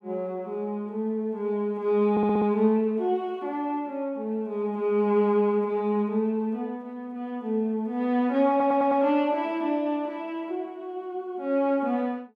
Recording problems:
audio stuttering; at 2 s and at 8.5 s

